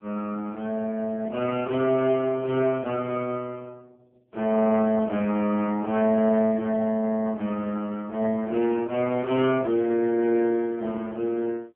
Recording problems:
telephone audio; 150 Hz to 3.1 kHz, AMR-NB

